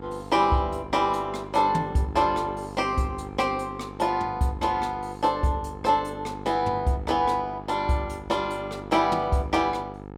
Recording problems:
mains hum; 50 Hz, harmonics up to 1.8 kHz, SNR 14 dB

